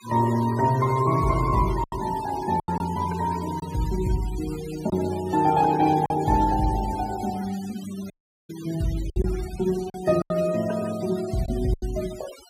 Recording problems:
denoising artefacts; signal-to-artefact ratio 17 dB
lost packets; 5% of the sound replaced, filled with silence
dropout; at 8 s

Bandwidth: 15.5 kHz